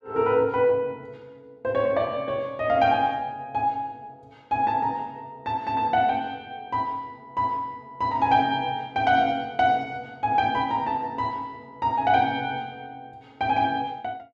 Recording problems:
none

